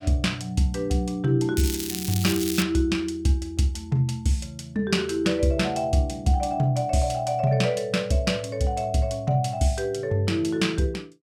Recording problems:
crackle; from 1.5 to 2.5 s; loose cable, SNR 7 dB

